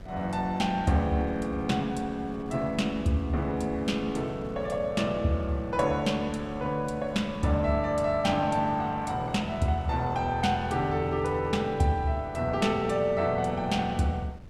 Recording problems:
wind noise; below 270 Hz, SNR 18 dB

